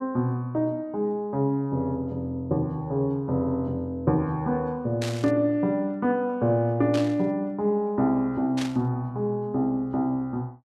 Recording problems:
static burst; at 5 s, at 7 s and at 8.5 s; peak -4 dB vs average level

